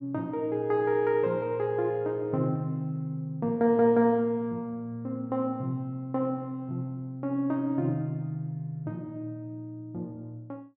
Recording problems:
none

